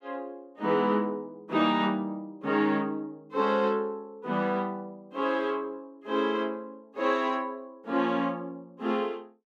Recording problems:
none

